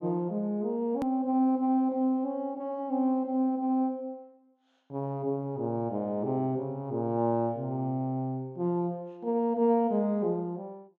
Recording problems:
click at an edit; at 1 s

